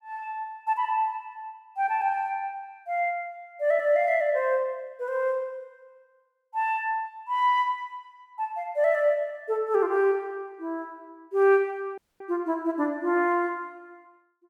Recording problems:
audio cutting out; at 12 s

